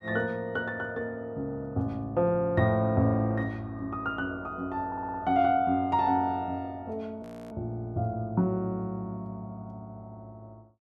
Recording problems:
stutter; at 5 s
audio freezing; at 7 s

